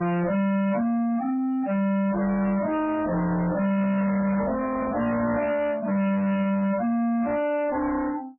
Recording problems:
codec artefacts; MP3, then MP3, log-spectral distance 2 dB, nothing above 2.5 kHz
distortion; soft clipping, signal-to-distortion ratio 7 dB
microphone handling noise; from 3 to 5.5 s; peak -4 dB vs average level

